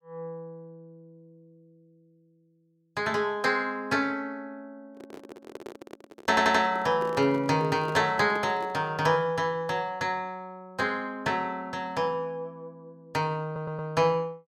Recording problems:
microphone handling noise; from 5 to 9 s; peak -7 dB vs average level
audio stuttering; at 6.5 s and at 13 s

